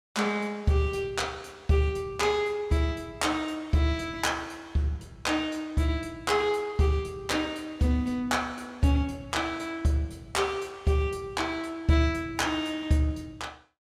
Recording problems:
none

